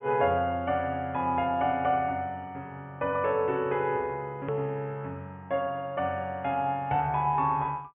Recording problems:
treble missing; nothing above 3.3 kHz
edit click; at 4.5 s

